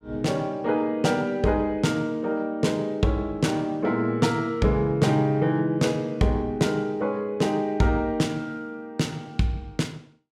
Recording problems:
none

